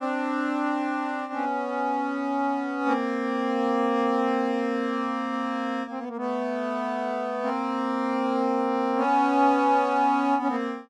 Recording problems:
none

